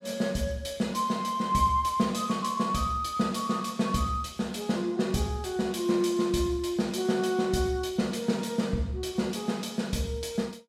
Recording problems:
none

